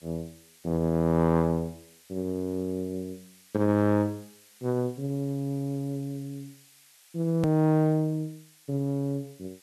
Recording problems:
background hiss; slope +4 dB per octave, SNR 26 dB
edit click; at 7.5 s

